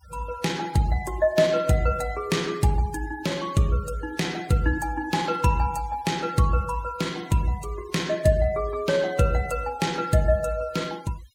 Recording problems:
denoising artefacts; signal-to-artefact ratio 20 dB

